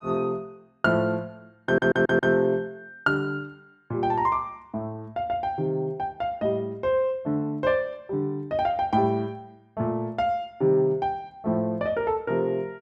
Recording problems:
audio stuttering; at 1.5 s

